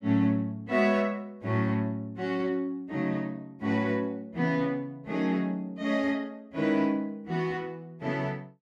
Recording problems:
none

